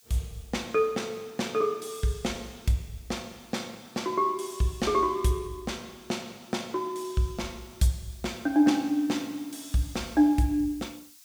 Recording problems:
hiss; slope +6 dB per octave, SNR 25 dB

